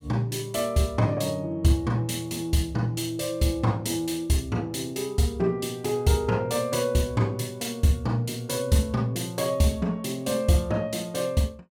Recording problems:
none

